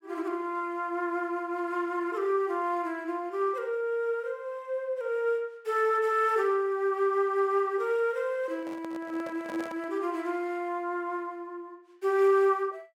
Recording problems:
handling noise; from 8.5 to 10 s; peak -8 dB vs average level

